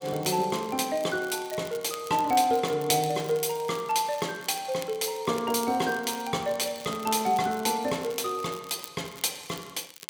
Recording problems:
crackling; vinyl, SNR 17 dB

